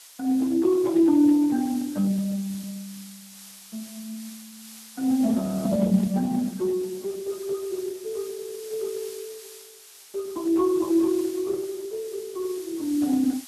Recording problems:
lossy compression; Speex, then Speex, log-spectral distance 2 dB
background hiss; slope +3 dB per octave, SNR 18 dB
audio freezing; at 5.5 s

